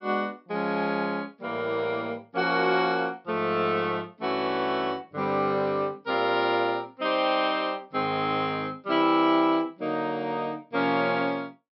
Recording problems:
treble cut off; nothing above 5.5 kHz

